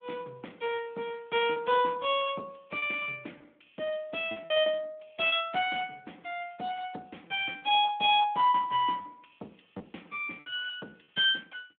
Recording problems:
phone line; 240 Hz to 3.6 kHz, Speex
packet loss; 8% of the sound replaced, filled with repeated pitch periods

